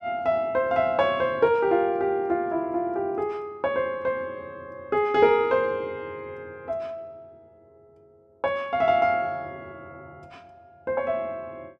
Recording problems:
none

